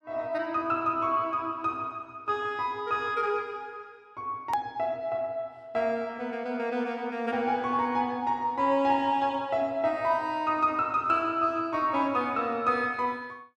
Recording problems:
hard cut with a click; at 4.5 s

